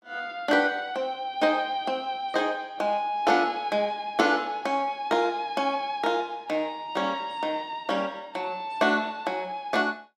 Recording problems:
none

